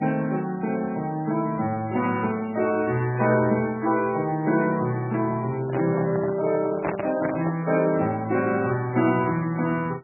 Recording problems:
lossy compression; MP3, log-spectral distance 3 dB, nothing above 2.2 kHz
handling noise; from 5.5 to 7.5 s; peak 0 dB vs average level

